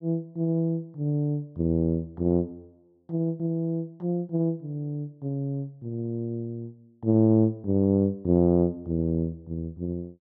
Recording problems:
none

